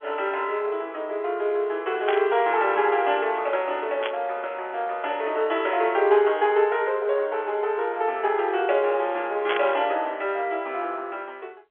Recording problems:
telephone audio; 340 Hz to 3.4 kHz, G.711
static burst; at 2 s, at 4 s and at 9.5 s; peak 0 dB vs average level

